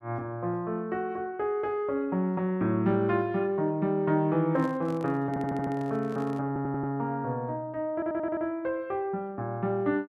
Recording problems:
handling noise; from 4.5 to 6.5 s; peak -10 dB vs average level
audio stuttering; at 5.5 s, at 6.5 s and at 8 s

